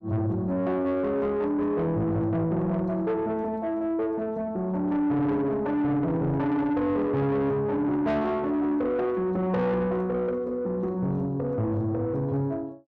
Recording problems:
distortion; soft clipping, signal-to-distortion ratio 10 dB

